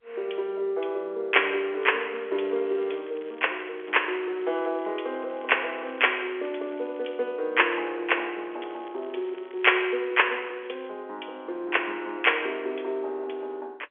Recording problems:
telephone audio; 300 Hz to 3.4 kHz, G.711
crackle; from 2 to 7 s and from 8.5 to 11 s; loose cable, SNR 26 dB

